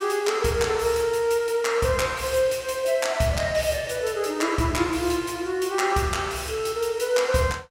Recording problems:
none

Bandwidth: 16 kHz